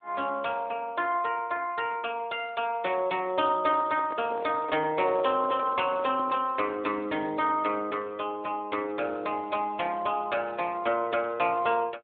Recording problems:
telephone audio; 280 Hz to 3.5 kHz, AMR-NB
handling noise; from 3.5 to 6.5 s; peak -7 dB vs average level

